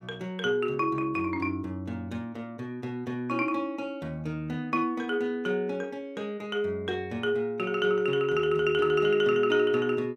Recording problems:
none

